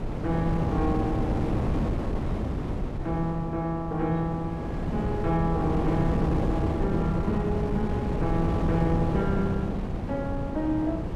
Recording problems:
hum; 60 Hz, harmonics up to 720 Hz, SNR 22 dB
wind noise; below 330 Hz, SNR 0 dB

